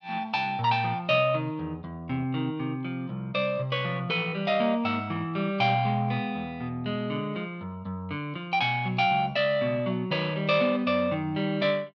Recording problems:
none

